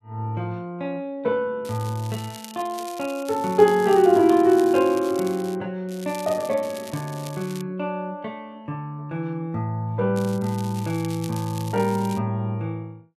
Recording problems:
crackling; from 1.5 to 5.5 s, from 6 to 7.5 s and from 10 to 12 s; loose cable, SNR 18 dB

